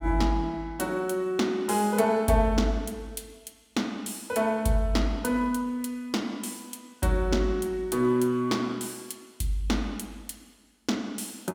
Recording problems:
none

